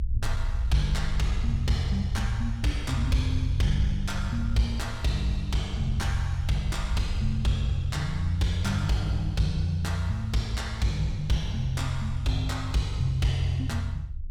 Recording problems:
distorted audio; soft clipping, signal-to-distortion ratio 12 dB
rumble; below 74 Hz, SNR 6 dB

